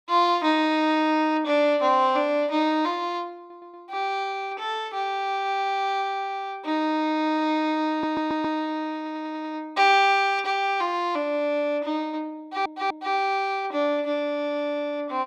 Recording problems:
stutter; 4 times, first at 3.5 s

